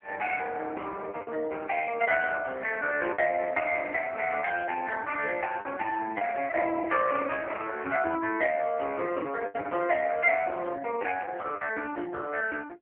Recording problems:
phone line; 280 Hz to 2.3 kHz, AMR-NB
packet loss; 4% of the sound replaced, filled with the last packet

